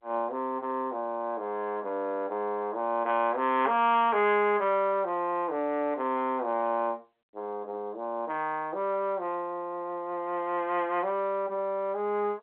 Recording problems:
telephone audio; 240 Hz to 3.5 kHz, G.711

